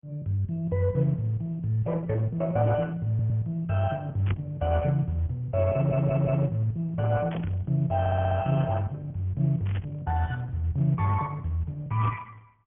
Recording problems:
treble missing; nothing above 3.2 kHz
lossy codec; Opus, log-spectral distance 2 dB
audio stuttering; at 3 s, at 5.5 s and at 8 s
static burst; 4 times, first at 4.5 s; peak -10 dB vs average level

